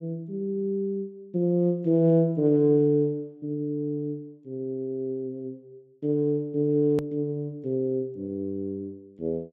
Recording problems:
click at an edit; at 7 s

